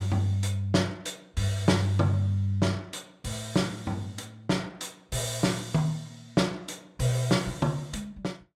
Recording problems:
none

